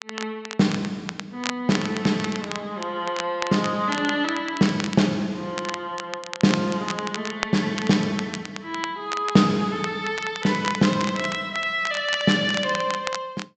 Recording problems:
treble cut off; nothing above 8 kHz
crackling; vinyl, SNR 10 dB

